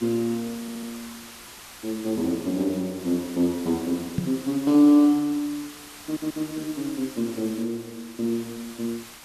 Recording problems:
hiss; slope 0 dB per octave, SNR 16 dB
audio stuttering; at 0.5 s and at 6 s
knock on the microphone; at 4 s; peak +3 dB vs average level

